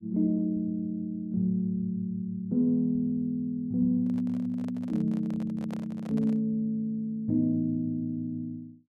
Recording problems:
handling noise; from 4 to 6.5 s; peak -9 dB vs average level

